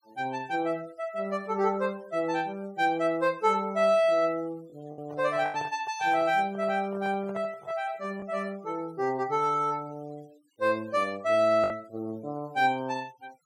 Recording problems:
noise reduction artefacts; signal-to-artefact ratio 27 dB
lost packets; 1.8% of the sound replaced, filled with the last packet
handling noise; from 5 to 8 s; peak -11 dB vs average level

